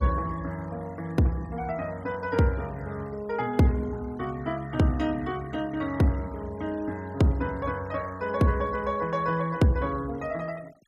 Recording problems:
denoising artefacts; signal-to-artefact ratio 23 dB

